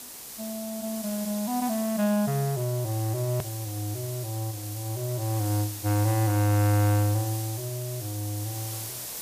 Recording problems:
background hiss; SNR 8 dB
hard cut with a click; at 3.5 s

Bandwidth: 15 kHz